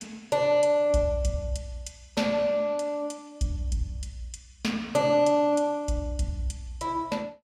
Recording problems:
none

